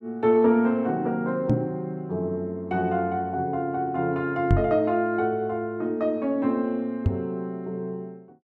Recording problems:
knock on the microphone; at 1.5 s, at 4.5 s and at 7 s; peak +8 dB vs average level

